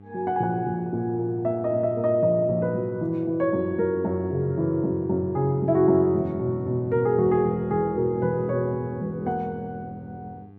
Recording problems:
electrical hum; 50 Hz, harmonics up to 800 Hz, SNR 22 dB

